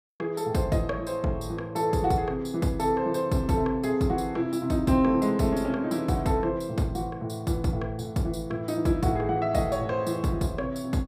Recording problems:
none

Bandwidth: 15 kHz